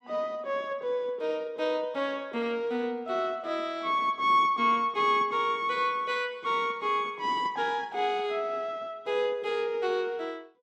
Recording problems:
none

